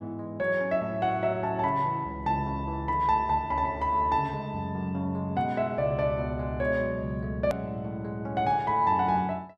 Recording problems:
hard cut with a click; at 7.5 s

